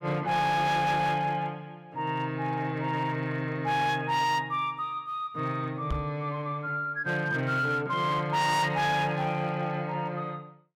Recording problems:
distortion; hard clipping, signal-to-distortion ratio 11 dB
microphone bump; at 6 s; peak 0 dB vs average level

